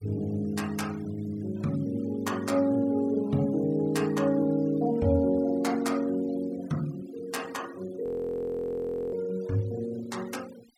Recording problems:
denoising artefacts; signal-to-artefact ratio 23 dB
frozen audio; at 8 s for 1 s

